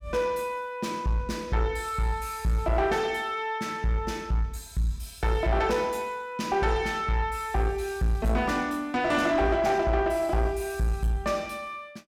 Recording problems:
distorted audio; soft clipping, signal-to-distortion ratio 10 dB

